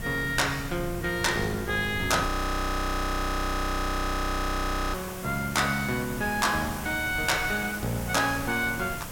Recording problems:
distorted audio; soft clipping, signal-to-distortion ratio 10 dB
background hiss; slope -3 dB per octave, SNR 12 dB
wind noise; below 160 Hz, SNR 10 dB
audio freezing; at 2.5 s for 2.5 s

